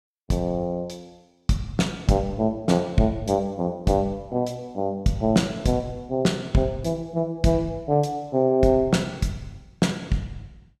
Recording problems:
none

